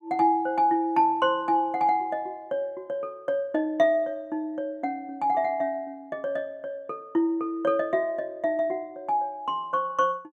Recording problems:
none

